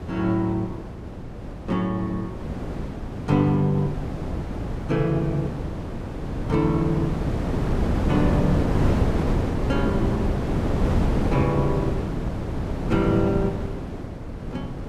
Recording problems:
wind on the microphone; below 350 Hz, SNR 2 dB

